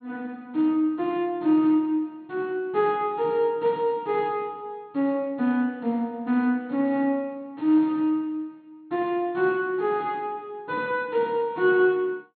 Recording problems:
low-pass filter; nothing above 4.3 kHz

